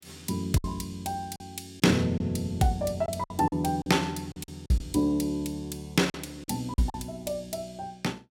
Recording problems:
lost packets; 7% of the sound replaced, filled with silence

